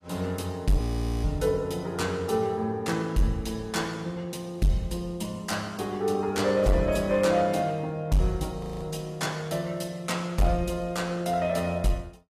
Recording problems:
codec artefacts; AAC, log-spectral distance 2 dB, nothing above 15.1 kHz
distortion; hard clipping, signal-to-distortion ratio 11 dB
audio freezing; at 1 s and at 8.5 s

